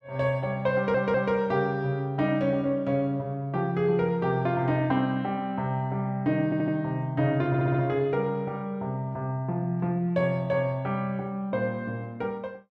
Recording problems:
audio stuttering; at 1 s, at 6.5 s and at 7.5 s

